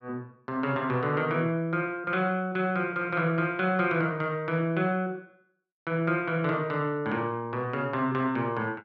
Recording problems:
none

